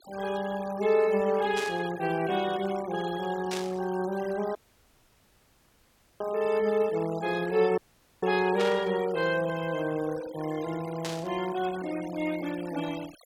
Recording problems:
noise reduction artefacts; signal-to-artefact ratio 17 dB
burst of static; 4 times, first at 1.5 s; peak -2 dB vs average level
audio cutting out; at 4.5 s for 1.5 s and at 8 s

